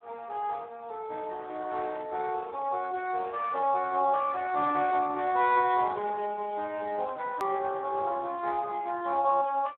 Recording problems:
telephone audio; 240 Hz to 3.4 kHz, Speex
hard cut with a click; at 7.5 s

